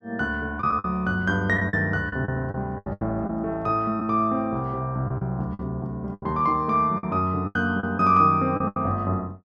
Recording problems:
packet loss; 9% of the sound replaced, filled with the last packet

